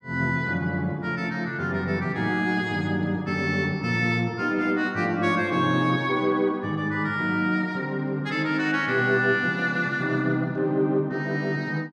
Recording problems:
none

